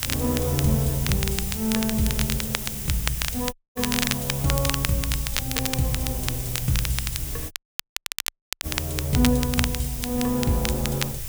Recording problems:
hiss; slope +1 dB per octave, SNR 5 dB
low-frequency rumble; below 98 Hz, SNR 13 dB
crackling; vinyl, SNR 4 dB
audio cutting out; at 3.5 s and at 7.5 s for 1 s

